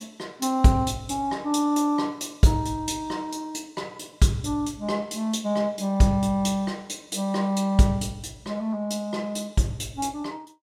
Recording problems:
none

